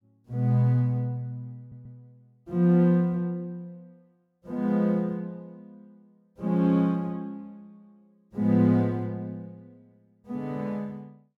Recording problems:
stutter; at 1.5 s

